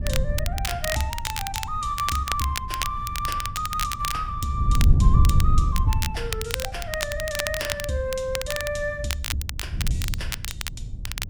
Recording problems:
wind noise; below 96 Hz, SNR -1 dB
crackling; vinyl, SNR 3 dB

